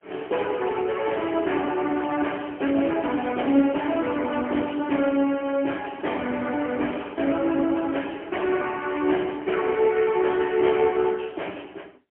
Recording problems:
telephone audio; 190 Hz to 3.2 kHz, AMR-NB, then MP3

